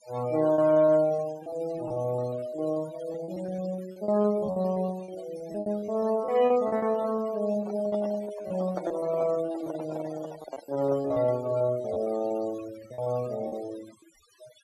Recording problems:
denoising artefacts; signal-to-artefact ratio 18 dB
packet loss; 14% of the sound replaced, filled with repeated pitch periods
microphone handling noise; from 7.5 to 11 s; peak -1 dB vs average level

